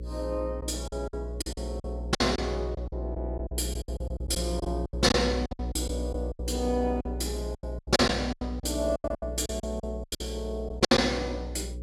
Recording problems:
hum; 60 Hz, harmonics up to 540 Hz, SNR 6 dB
packet loss; 15% of the sound replaced, filled with silence

